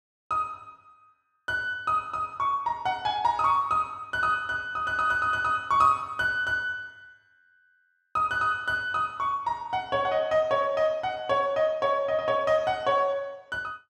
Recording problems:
none

